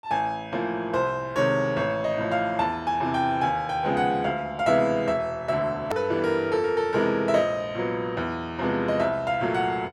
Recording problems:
hard cut with a click; at 6 s

